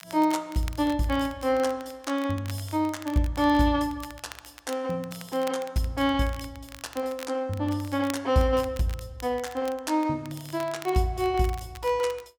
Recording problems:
crackling; vinyl, SNR 19 dB

